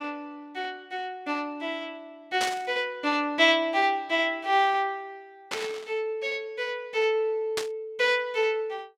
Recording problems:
burst of static; at 2.5 s, at 5.5 s and at 7.5 s; peak +1 dB vs average level

